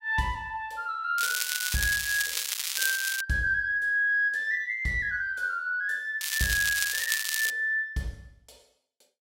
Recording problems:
crackle; from 1 to 3 s and from 6 to 7.5 s; loose cable, SNR 2 dB

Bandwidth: 16 kHz